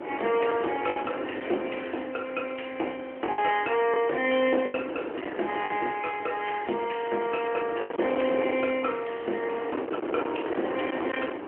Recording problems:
phone line; 280 Hz to 3.2 kHz, AMR-NB
distortion; hard clipping, uneven, signal-to-distortion ratio 14 dB
wind noise; below 780 Hz, SNR 7 dB
lost packets; 3% of the sound replaced, filled with the last packet

